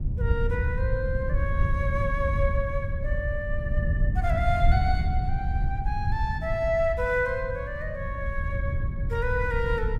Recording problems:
wind noise; below 98 Hz, SNR -1 dB

